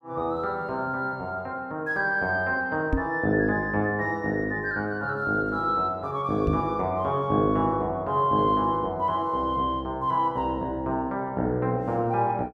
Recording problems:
microphone thump; at 3 s and at 6.5 s; peak +4 dB vs average level

